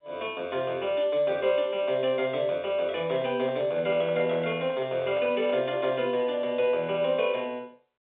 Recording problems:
telephone audio; 190 Hz to 3.5 kHz, G.711
microphone handling noise; from 3 to 6 s; peak -10 dB vs average level

